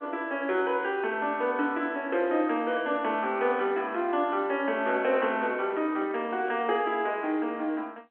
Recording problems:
phone line; 240 Hz to 3.4 kHz, G.711
microphone handling noise; from 5 to 7 s; peak -10 dB vs average level

